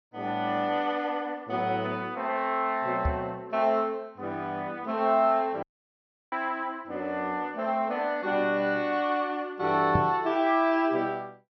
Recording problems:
low-pass filter; nothing above 5.9 kHz
microphone bump; at 3 s and at 10 s; peak +4 dB vs average level
audio cutting out; at 5.5 s for 0.5 s

